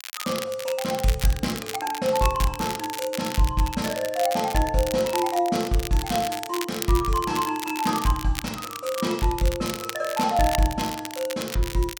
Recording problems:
crackling; vinyl, SNR 9 dB

